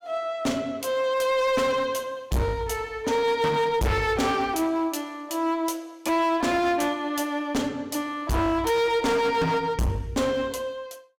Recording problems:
distortion; hard clipping, uneven, signal-to-distortion ratio 7 dB

